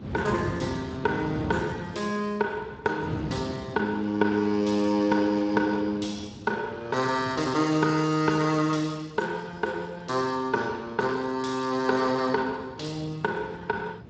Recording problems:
lossy codec; Speex, log-spectral distance 5 dB, nothing above 7.8 kHz
wind on the microphone; below 330 Hz, SNR 13 dB

